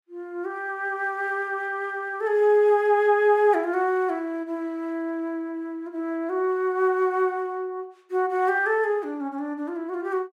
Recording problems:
none

